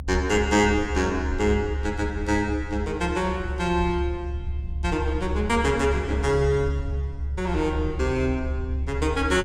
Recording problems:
rumble; below 72 Hz, strongest tone 70 Hz, SNR 5 dB

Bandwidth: 16.5 kHz